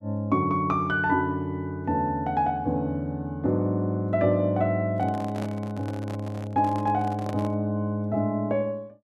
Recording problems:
handling noise; from 5 to 7.5 s; peak -7 dB vs average level

